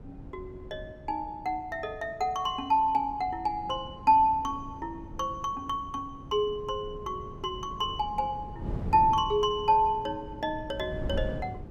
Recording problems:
wind on the microphone; below 210 Hz, SNR 13 dB

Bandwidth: 14.5 kHz